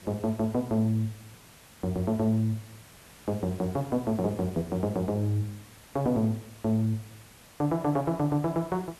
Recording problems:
background hiss; slope -2 dB per octave, SNR 22 dB

